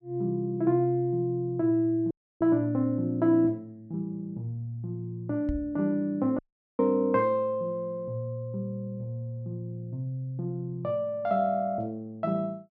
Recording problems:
dropout; at 2 s and at 6.5 s
microphone thump; at 5.5 s; peak -1 dB vs average level

